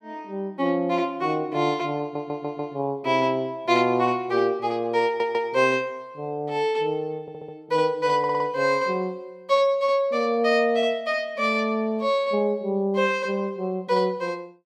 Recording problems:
stutter; 4 times, first at 2 s

